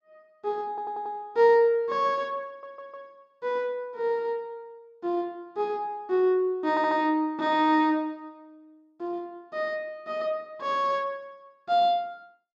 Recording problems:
stutter; at 0.5 s, at 2.5 s and at 6.5 s

